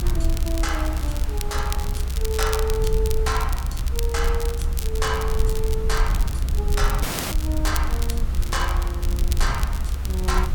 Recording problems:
background hiss; SNR 13 dB
low-frequency rumble; below 66 Hz, SNR -3 dB
crackle; vinyl, SNR 7 dB
dropout; at 7 s

